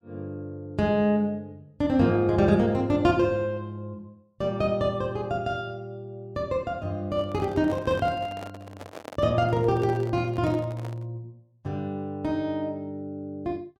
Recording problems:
microphone handling noise; from 7 to 11 s; peak -8 dB vs average level

